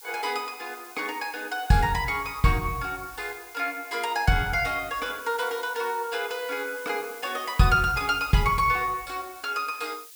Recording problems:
hiss; slope +6 dB per octave, SNR 17 dB

